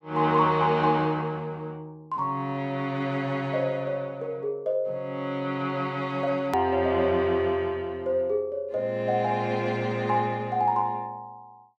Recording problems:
edit click; at 6.5 s

